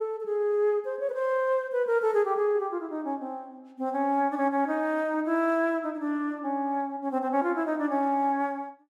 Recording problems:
none

